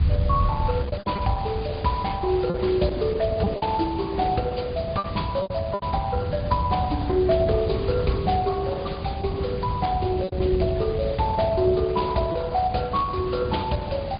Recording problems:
treble missing; nothing above 4.9 kHz
lossy codec; Opus, log-spectral distance 3 dB
background hiss; SNR 17 dB
rumble; below 120 Hz, SNR 3 dB
packet loss; 4% of the sound replaced, filled with repeated pitch periods

